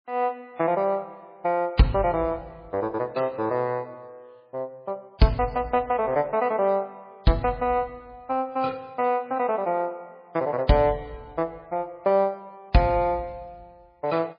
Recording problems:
lossy compression; MP3, log-spectral distance 2 dB, nothing above 4.4 kHz

